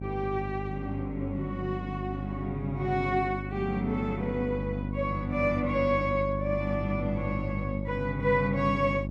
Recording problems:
electrical hum; 50 Hz, harmonics up to 650 Hz, SNR 5 dB

